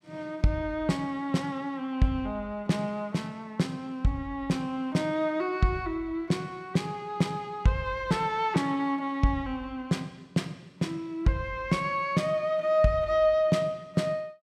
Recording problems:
none

